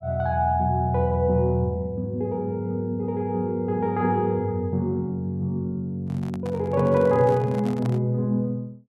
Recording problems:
handling noise; from 6 to 8 s; peak -9 dB vs average level

